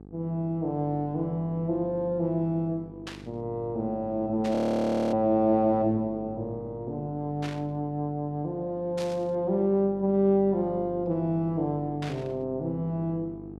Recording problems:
hum; 50 Hz, harmonics up to 900 Hz, SNR 17 dB
burst of static; 5 times, first at 3 s; peak -7 dB vs average level
audio freezing; at 4.5 s for 0.5 s

